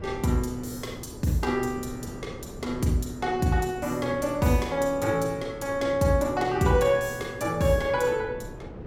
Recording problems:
wind noise; below 440 Hz, SNR 15 dB

